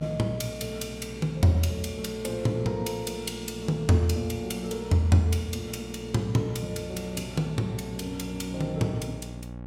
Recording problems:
hum; 60 Hz, harmonics up to 1.1 kHz, SNR 14 dB

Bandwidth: 16 kHz